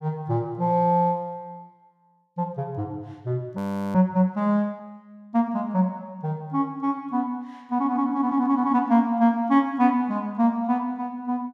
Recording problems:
frozen audio; at 3.5 s

